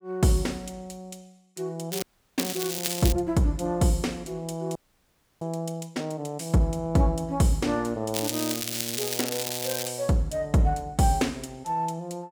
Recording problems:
crackling; from 2 to 3 s and from 8 to 10 s; loose cable, SNR 3 dB
frozen audio; at 2 s and at 5 s for 0.5 s

